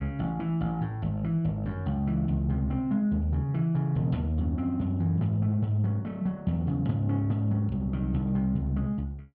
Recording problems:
none

